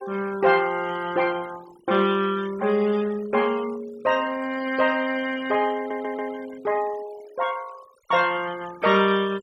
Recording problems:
noise reduction artefacts; signal-to-artefact ratio 20 dB
stutter; at 6 s

